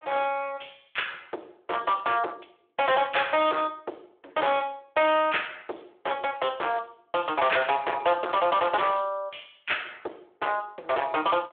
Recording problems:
phone line; 320 Hz to 3.6 kHz, Speex
distorted audio; hard clipping, uneven, signal-to-distortion ratio 6 dB

